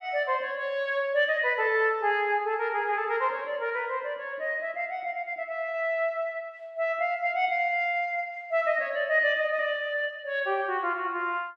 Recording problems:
none

